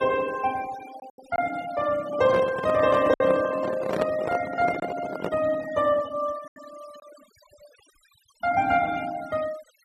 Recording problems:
noise reduction artefacts; signal-to-artefact ratio 18 dB
packet loss; 4% of the sound replaced, filled with silence
handling noise; from 2 to 5.5 s; peak 0 dB vs average level

